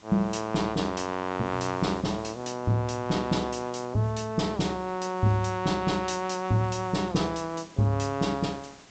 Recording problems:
treble cut off; nothing above 8 kHz
background hiss; slope -2 dB per octave, SNR 24 dB

